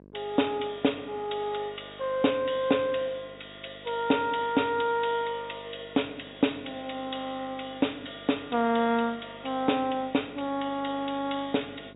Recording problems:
treble cut off; nothing above 4 kHz
electrical hum; 50 Hz, harmonics up to 1.1 kHz, SNR 23 dB

